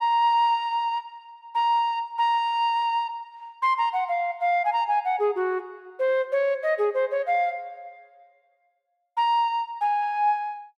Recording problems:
none

